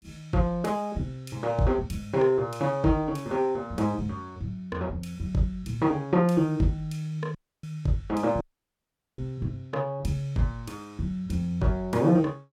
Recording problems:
dropout; at 7.5 s and at 8.5 s for 1 s

